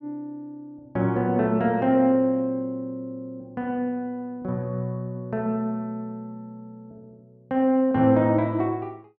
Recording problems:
none

